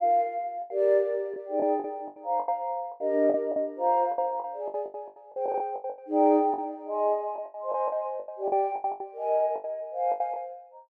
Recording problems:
lost packets; 16% of the sound replaced, filled with the last packet

